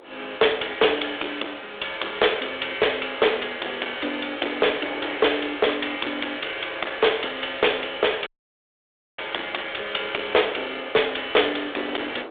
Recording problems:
telephone audio; 320 Hz to 3.6 kHz, G.726
distorted audio; hard clipping, uneven, signal-to-distortion ratio 10 dB
wind noise; below 990 Hz, SNR 19 dB
dropout; at 8.5 s for 1 s

